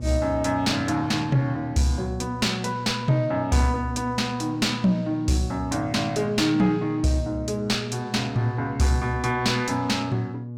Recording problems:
distorted audio; soft clipping, signal-to-distortion ratio 11 dB
electrical hum; 60 Hz, harmonics up to 600 Hz, SNR 10 dB

